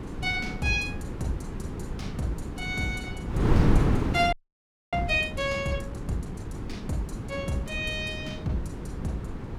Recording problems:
wind on the microphone; below 280 Hz, SNR 1 dB
audio freezing; at 4.5 s for 0.5 s

